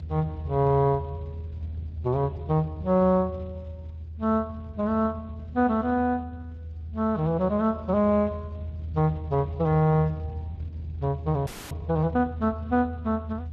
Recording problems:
lossy codec; Speex, log-spectral distance 2 dB
rumble; below 84 Hz, strongest tone 80 Hz, SNR 11 dB
frozen audio; at 11 s

